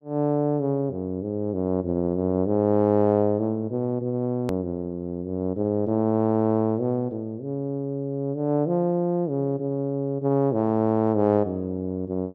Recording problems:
click at an edit; at 4.5 s

